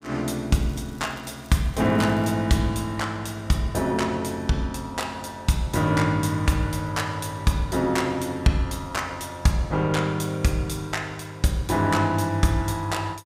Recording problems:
crackling; from 0.5 to 2.5 s; loose cable, SNR 27 dB

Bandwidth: 15.5 kHz